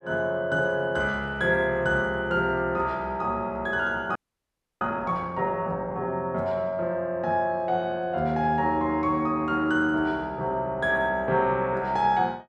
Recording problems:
frozen audio; at 4 s for 0.5 s

